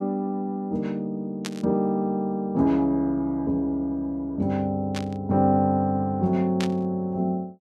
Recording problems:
static burst; at 1.5 s, at 5 s and at 6.5 s; peak -3 dB vs average level

